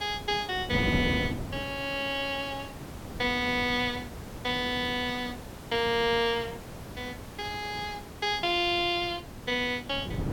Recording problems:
hiss; slope -5 dB per octave, SNR 18 dB
wind noise; below 320 Hz, SNR 10 dB

